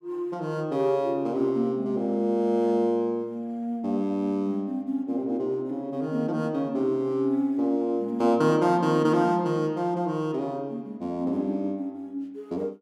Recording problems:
none

